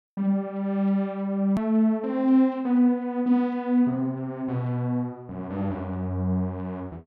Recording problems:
hard cut with a click; at 1.5 s

